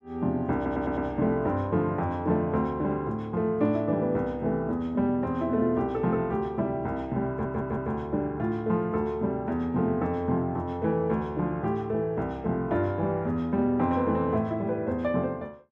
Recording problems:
audio stuttering; at 0.5 s and at 7.5 s

